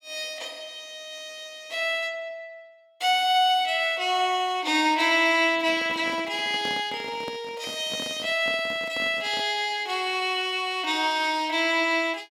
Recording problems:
handling noise; from 5.5 to 9.5 s; peak -10 dB vs average level

